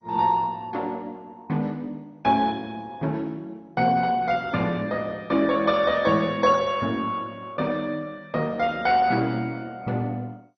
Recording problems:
codec artefacts; MP2, log-spectral distance 2 dB, nothing above 5.8 kHz

